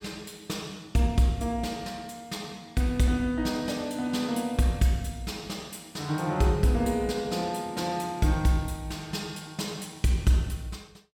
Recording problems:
none

